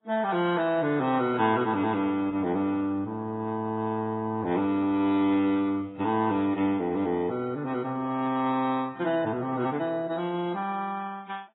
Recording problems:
lossy codec; Vorbis, then AAC, log-spectral distance 2 dB, nothing above 3.9 kHz

